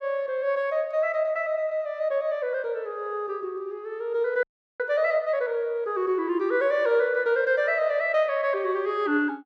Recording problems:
frozen audio; at 4.5 s

